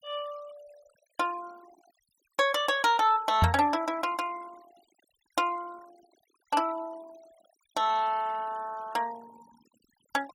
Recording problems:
noise reduction artefacts; signal-to-artefact ratio 23 dB
microphone bump; at 3.5 s; peak +8 dB vs average level

